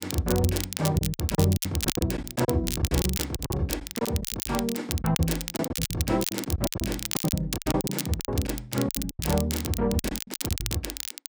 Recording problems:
crackle; vinyl, SNR 4 dB
packet loss; 18% of the sound replaced, filled with silence

